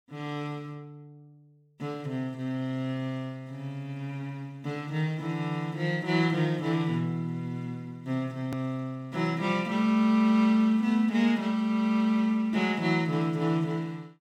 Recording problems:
hard cut with a click; at 8.5 s

